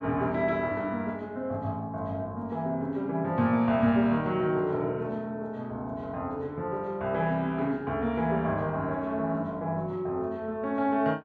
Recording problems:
none

